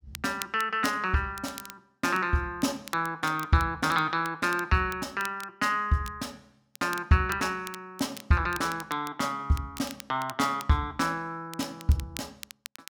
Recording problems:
crackle; vinyl, SNR 17 dB

